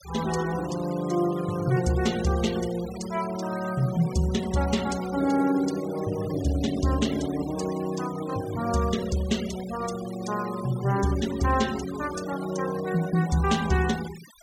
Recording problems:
denoising artefacts; signal-to-artefact ratio 15 dB

